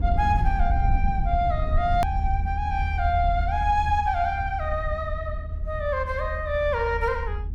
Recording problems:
rumble; below 78 Hz, SNR 3 dB
hard cut with a click; at 2 s

